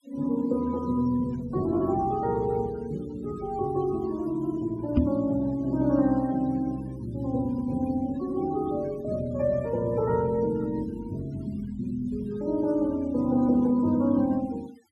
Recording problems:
noise reduction artefacts; signal-to-artefact ratio 23 dB
microphone bump; at 5 s; peak +8 dB vs average level

